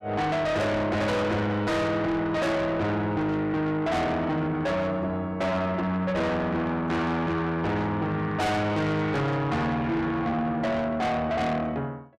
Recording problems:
distorted audio; soft clipping, signal-to-distortion ratio 6 dB

